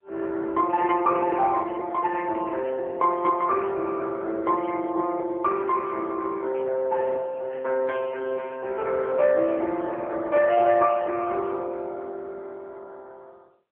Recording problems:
telephone audio; 280 Hz to 2.3 kHz, AMR-NB

